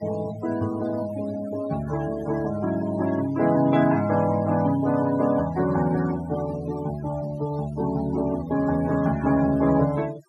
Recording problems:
noise reduction artefacts; signal-to-artefact ratio 17 dB

